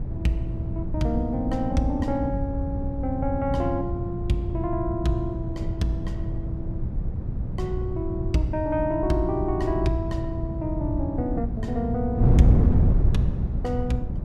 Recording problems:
electrical hum; 60 Hz, harmonics up to 360 Hz, SNR 9 dB
wind noise; below 130 Hz, SNR 0 dB

